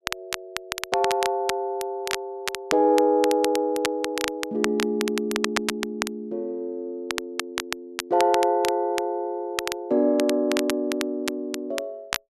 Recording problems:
crackle; vinyl, SNR 7 dB

